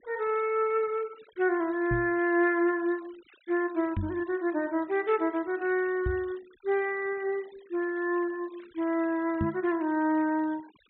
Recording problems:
treble missing; nothing above 4 kHz
noise reduction artefacts; signal-to-artefact ratio 25 dB
knock on the microphone; 4 times, first at 2 s; peak +2 dB vs average level

